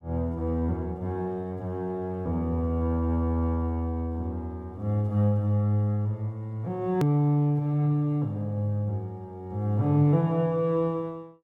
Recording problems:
click at an edit; at 7 s

